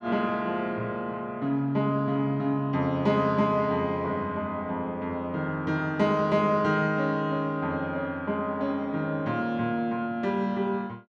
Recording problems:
none

